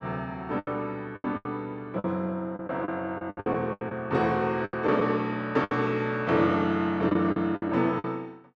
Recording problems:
lost packets; 12% of the sound replaced, filled with the last packet

